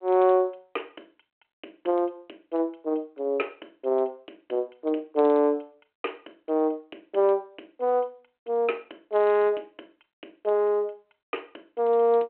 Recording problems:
phone line; 280 Hz to 3.3 kHz, G.726

